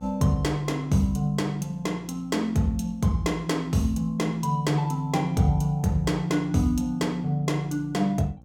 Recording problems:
hum; 60 Hz, harmonics up to 840 Hz, SNR 24 dB

